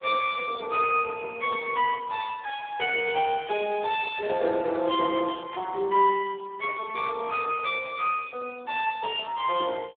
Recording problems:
telephone audio; 320 Hz to 3.5 kHz, Speex
static burst; at 1.5 s, at 3 s and at 5.5 s; peak -14 dB vs average level

